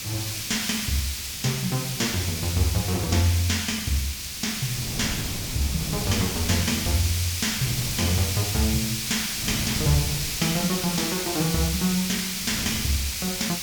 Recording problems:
hiss; slope +5 dB per octave, SNR 2 dB
wind on the microphone; below 230 Hz, SNR 12 dB

